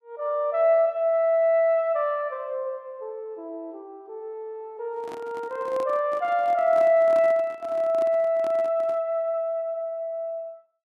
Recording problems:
microphone handling noise; from 5 to 9 s; peak -12 dB vs average level

